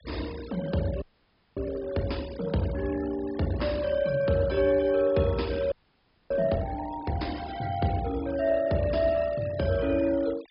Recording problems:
low-pass filter; nothing above 5.5 kHz
denoising artefacts; signal-to-artefact ratio 19 dB
audio freezing; at 1 s for 0.5 s and at 5.5 s for 0.5 s

